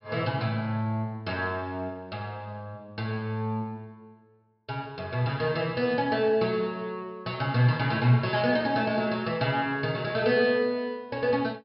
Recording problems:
low-pass filter; nothing above 5.3 kHz

